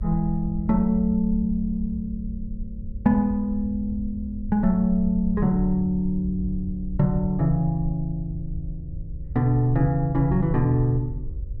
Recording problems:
electrical hum; 50 Hz, harmonics up to 550 Hz, SNR 27 dB
rumble; below 74 Hz, SNR 11 dB

